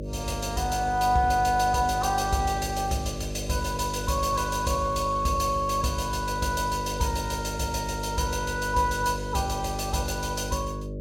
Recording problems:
electrical hum; 50 Hz, harmonics up to 600 Hz, SNR 8 dB

